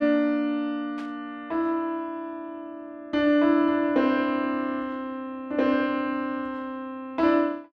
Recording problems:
static burst; at 1 s; peak -14 dB vs average level

